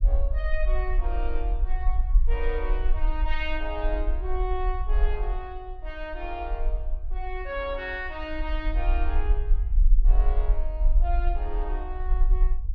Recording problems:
low-frequency rumble; below 44 Hz, SNR -7 dB

